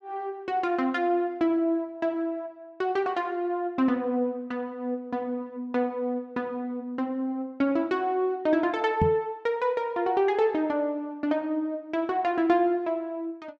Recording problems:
microphone thump; at 9 s; peak +6 dB vs average level

